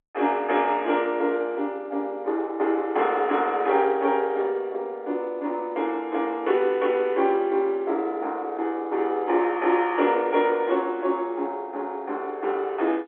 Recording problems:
phone line; 260 Hz to 3.5 kHz, G.711

